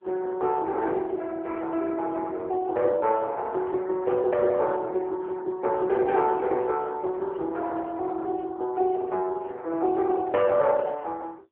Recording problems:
telephone audio; 280 Hz to 3 kHz, AMR-NB

